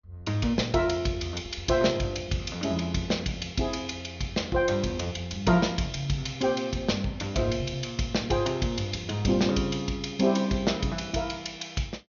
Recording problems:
treble missing; nothing above 6.7 kHz

